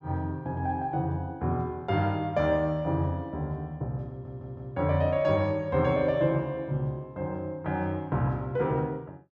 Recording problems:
audio stuttering; at 4 s

